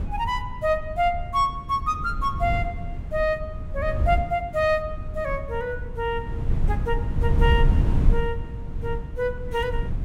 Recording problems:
wind noise; below 98 Hz, SNR 2 dB

